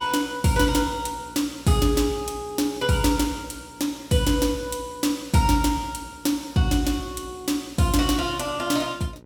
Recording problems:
electrical hum; 60 Hz, harmonics up to 1.5 kHz, SNR 25 dB

